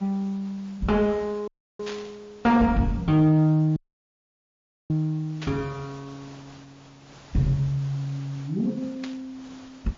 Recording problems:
codec artefacts; MP3, log-spectral distance 3 dB, nothing above 6.3 kHz
distortion; soft clipping, signal-to-distortion ratio 12 dB
hiss; slope -4 dB per octave, SNR 25 dB
audio cutting out; at 1.5 s and at 4 s for 1 s
burst of static; at 2 s, at 5.5 s and at 9 s; peak -8 dB vs average level

